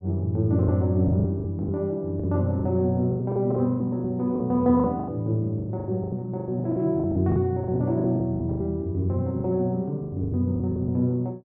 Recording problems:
packet loss; 17% of the sound replaced, filled with the last packet

